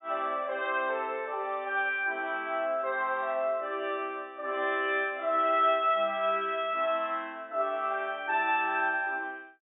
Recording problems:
treble cut off; nothing above 4 kHz

